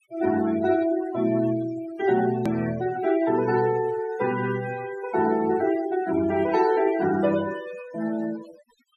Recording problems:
denoising artefacts; signal-to-artefact ratio 15 dB
click at an edit; at 2.5 s

